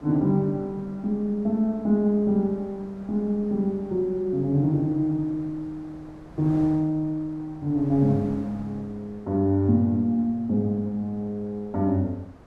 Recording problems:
wind on the microphone; below 670 Hz, SNR 22 dB

